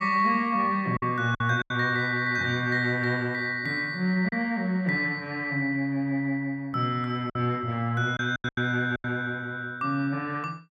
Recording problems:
packet loss; 5% of the sound replaced, filled with silence

